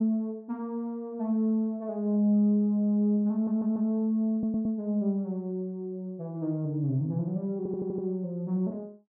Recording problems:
stutter; at 3.5 s, at 4.5 s and at 7.5 s

